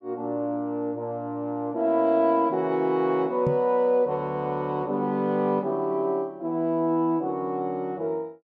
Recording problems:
microphone thump; at 3.5 s; peak +1 dB vs average level

